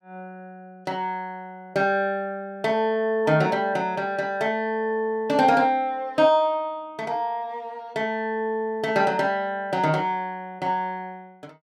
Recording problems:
none

